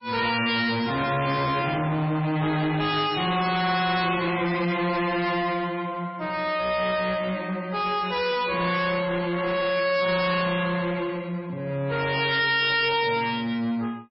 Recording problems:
codec artefacts; MP3, log-spectral distance 5 dB, nothing above 5.2 kHz
distorted audio; soft clipping, signal-to-distortion ratio 7 dB

